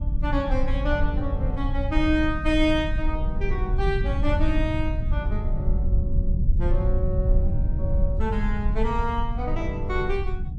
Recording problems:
low-frequency rumble; below 74 Hz, SNR -2 dB

